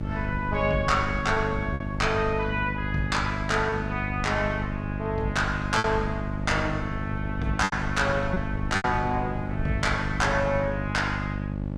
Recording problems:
electrical hum; 50 Hz, harmonics up to 900 Hz, SNR 4 dB
wind on the microphone; below 120 Hz, SNR 11 dB
packet loss; 3% of the sound replaced, filled with repeated pitch periods

